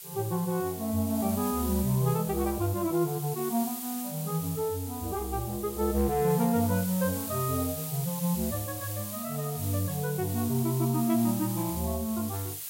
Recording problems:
hiss; slope +3 dB per octave, SNR 8 dB

